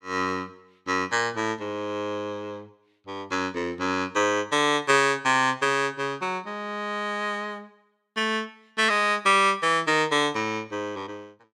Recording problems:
none

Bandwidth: 16 kHz